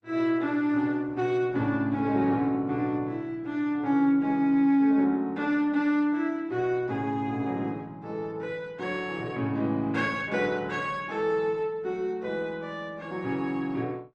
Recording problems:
lossy compression; Opus, log-spectral distance 2 dB

